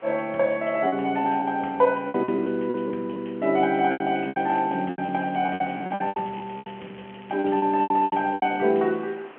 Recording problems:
phone line; 220 Hz to 3.2 kHz, G.711
hiss; SNR 25 dB
packet loss; 14% of the sound replaced, filled with repeated pitch periods
crackling; from 4 to 8.5 s; loose cable, SNR 27 dB

